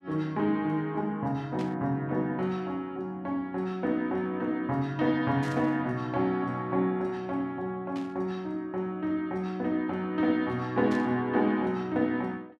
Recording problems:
static burst; 4 times, first at 1.5 s; peak -10 dB vs average level

